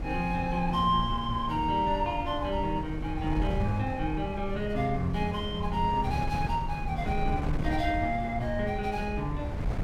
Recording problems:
wind on the microphone; below 140 Hz, SNR 6 dB

